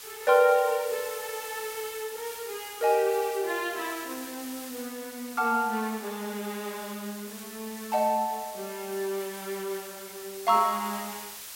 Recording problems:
hiss; slope +2 dB per octave, SNR 12 dB

